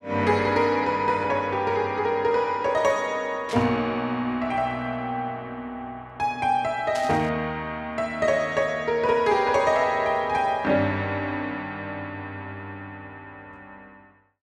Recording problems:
static burst; at 3.5 s and at 7 s; peak -7 dB vs average level

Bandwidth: 12.5 kHz